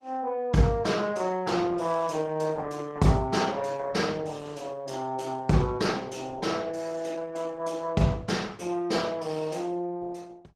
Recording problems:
lossy codec; Opus, log-spectral distance 3 dB, nothing above 15.5 kHz

